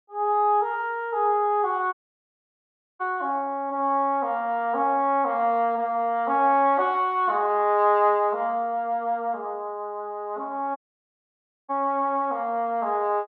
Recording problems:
dropout; at 2 s for 1 s and at 11 s for 1 s

